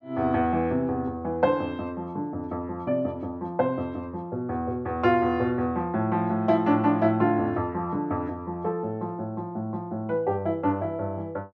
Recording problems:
none

